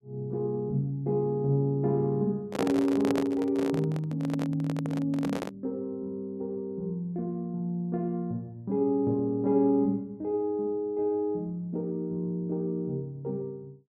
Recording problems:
microphone handling noise; from 2.5 to 5.5 s; peak +3 dB vs average level

